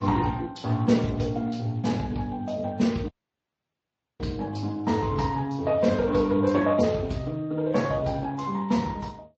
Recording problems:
codec artefacts; Speex, then MP3, log-spectral distance 3 dB, nothing above 7.3 kHz
audio cutting out; at 3 s for 1 s

